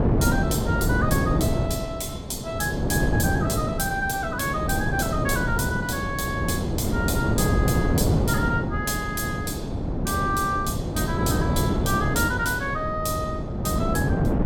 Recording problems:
wind noise; below 340 Hz, SNR -2 dB

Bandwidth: 17 kHz